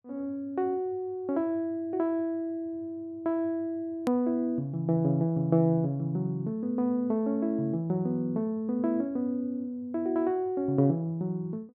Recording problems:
click at an edit; at 4 s

